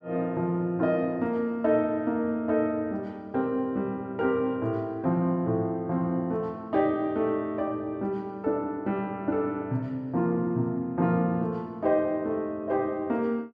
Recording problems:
none

